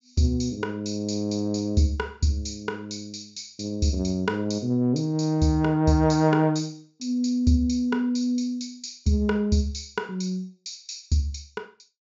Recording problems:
treble cut off; nothing above 8 kHz

